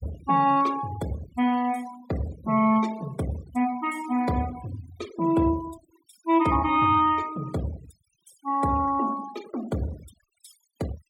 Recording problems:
noise reduction artefacts; signal-to-artefact ratio 19 dB

